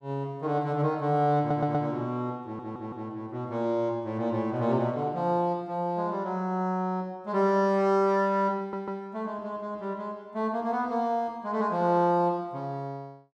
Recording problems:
audio stuttering; at 1.5 s, at 2.5 s and at 8.5 s

